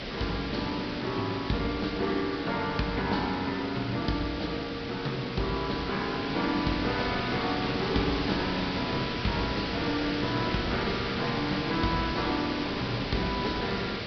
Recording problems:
treble missing; nothing above 5.5 kHz
hiss; SNR 4 dB

